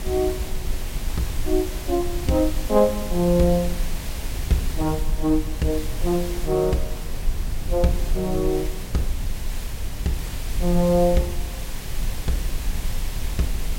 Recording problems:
hiss; SNR 12 dB
low-frequency rumble; below 52 Hz, strongest tone 20 Hz, SNR 7 dB
wind on the microphone; below 850 Hz, SNR 21 dB

